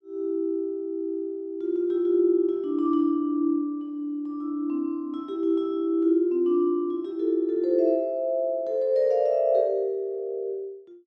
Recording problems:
none

